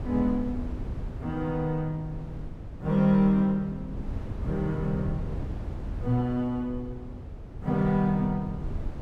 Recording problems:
wind noise; below 140 Hz, SNR 10 dB

